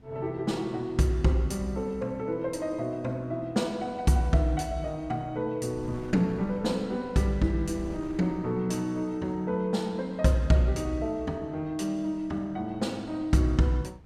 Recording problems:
wind on the microphone; below 290 Hz, SNR 22 dB

